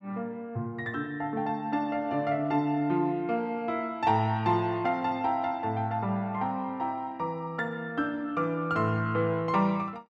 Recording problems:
none

